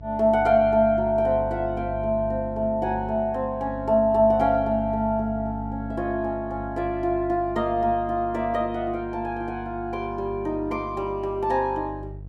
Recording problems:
hum; 50 Hz, harmonics up to 500 Hz, SNR 14 dB

